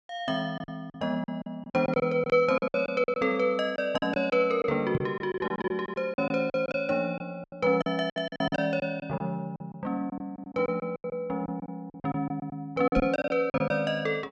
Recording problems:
packet loss; 15% of the sound replaced, filled with silence
microphone thump; at 5 s and at 13 s; peak +4 dB vs average level

